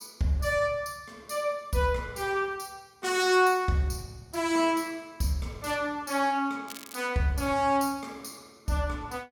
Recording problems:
crackle; at 6.5 s; loose cable, SNR 16 dB

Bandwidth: 18 kHz